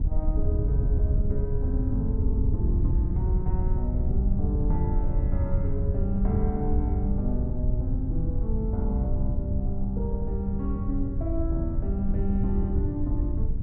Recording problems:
wind noise; below 86 Hz, SNR -5 dB

